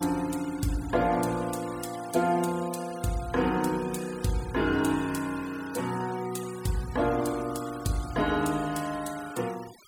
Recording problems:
noise reduction artefacts; signal-to-artefact ratio 16 dB

